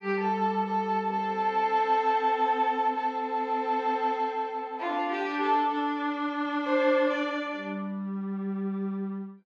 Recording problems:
none

